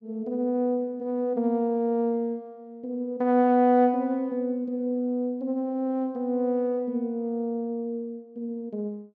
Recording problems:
none

